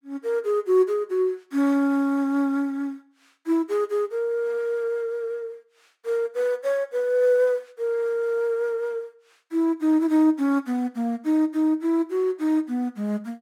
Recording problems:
none

